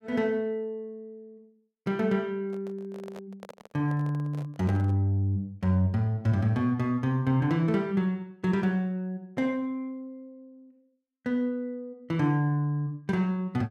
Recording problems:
microphone handling noise; from 2.5 to 5 s; peak -11 dB vs average level

